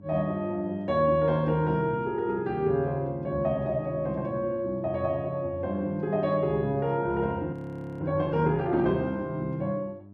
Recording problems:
hum; 50 Hz, harmonics up to 700 Hz, SNR 22 dB
frozen audio; at 7.5 s

